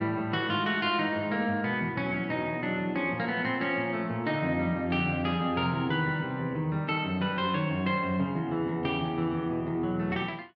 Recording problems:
none

